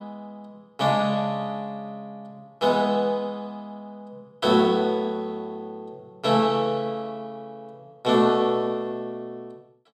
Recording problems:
none

